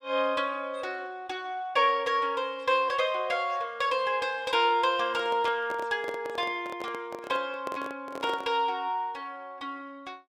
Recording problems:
microphone handling noise; from 5 to 8.5 s; peak -4 dB vs average level

